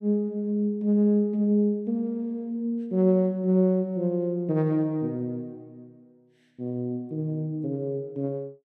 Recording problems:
none

